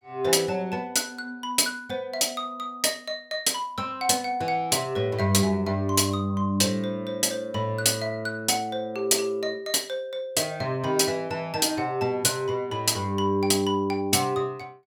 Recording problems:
none

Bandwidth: 17.5 kHz